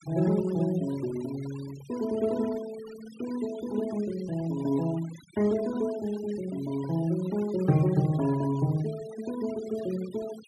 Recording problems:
denoising artefacts; signal-to-artefact ratio 19 dB

